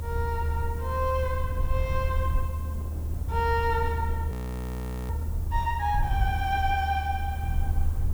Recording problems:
background hiss; SNR 20 dB
low-frequency rumble; below 78 Hz, SNR 0 dB
wind on the microphone; below 360 Hz, SNR 16 dB
frozen audio; at 4.5 s for 1 s

